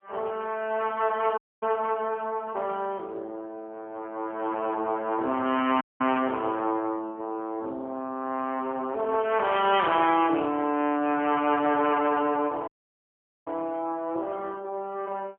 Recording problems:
telephone audio; 220 Hz to 3.3 kHz, AMR-NB
dropout; at 1.5 s, at 6 s and at 13 s for 1 s

